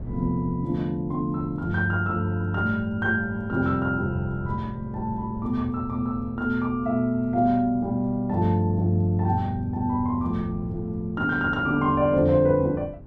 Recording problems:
wind on the microphone; below 190 Hz, SNR 18 dB

